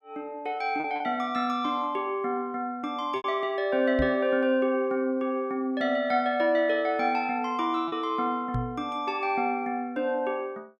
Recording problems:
lost packets; 1.9% of the sound replaced, filled with repeated pitch periods
knock on the microphone; at 4 s and at 8.5 s; peak 0 dB vs average level

